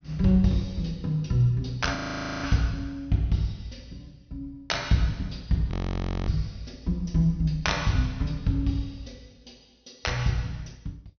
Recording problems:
treble cut off; nothing above 6.3 kHz
frozen audio; at 2 s and at 5.5 s for 0.5 s

